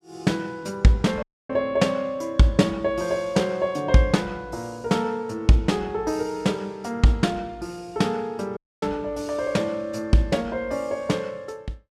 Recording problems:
dropout; at 1 s and at 8.5 s

